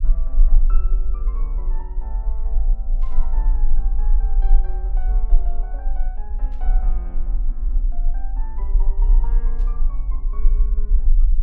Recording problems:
low-frequency rumble; below 36 Hz, strongest tone 22 Hz, SNR -20 dB
burst of static; at 3 s, at 6.5 s and at 9.5 s; peak -9 dB vs average level

